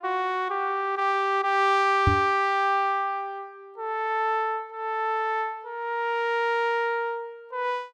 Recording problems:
knock on the microphone; at 2 s; peak +6 dB vs average level

